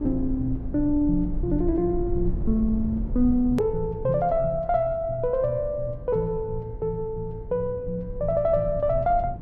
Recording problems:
rumble; below 70 Hz, SNR 10 dB
edit click; at 3.5 s

